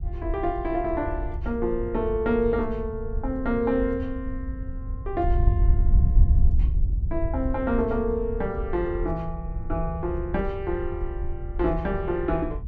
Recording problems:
wind on the microphone; below 74 Hz, SNR 2 dB

